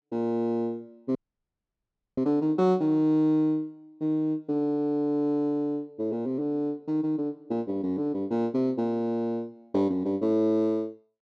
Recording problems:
dropout; at 1 s for 1 s

